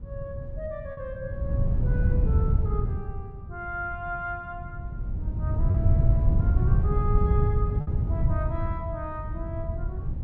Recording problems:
wind noise; below 120 Hz, SNR -10 dB
lost packets; 1.5% of the sound replaced, filled with repeated pitch periods

